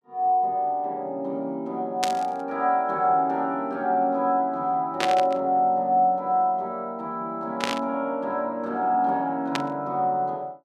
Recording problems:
burst of static; 4 times, first at 2 s; peak +3 dB vs average level

